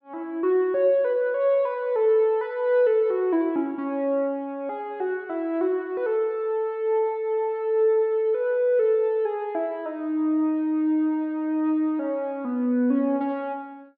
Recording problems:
low-pass filter; nothing above 5.5 kHz

